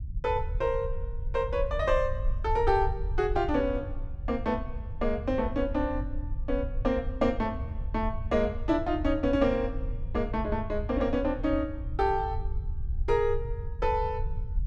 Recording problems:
rumble; below 74 Hz, SNR 6 dB

